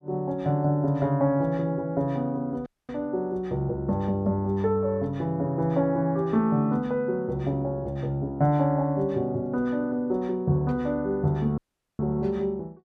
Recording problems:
dropout; at 2.5 s and at 12 s

